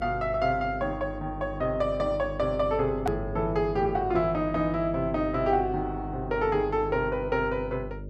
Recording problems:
electrical hum; 50 Hz, harmonics up to 600 Hz, SNR 11 dB
hard cut with a click; at 3 s

